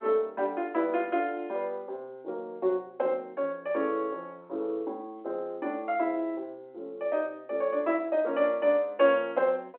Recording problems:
phone line; 300 Hz to 3.4 kHz, G.711

